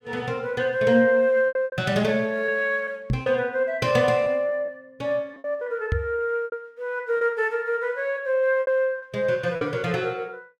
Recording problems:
lost packets; 7% of the sound replaced, filled with repeated pitch periods
microphone thump; at 3 s and at 6 s; peak +3 dB vs average level

